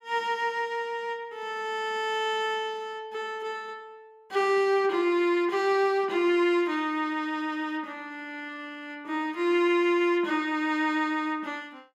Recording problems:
none

